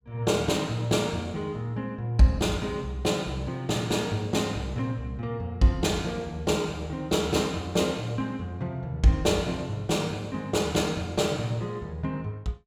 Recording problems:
none

